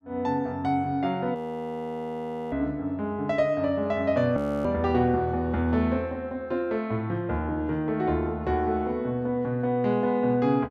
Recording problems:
frozen audio; at 1.5 s for 1 s and at 4.5 s

